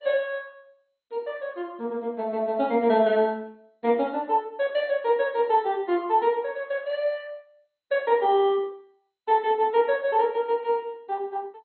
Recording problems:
codec artefacts; MP2, log-spectral distance 2 dB, nothing above 4.1 kHz

